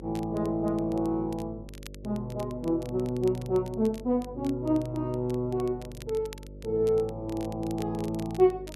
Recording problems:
electrical hum; 50 Hz, harmonics up to 600 Hz, SNR 16 dB
crackle; vinyl, SNR 22 dB

